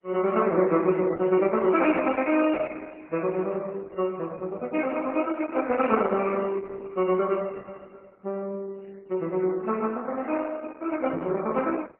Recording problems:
lossy compression; MP3, then Opus, log-spectral distance 4 dB

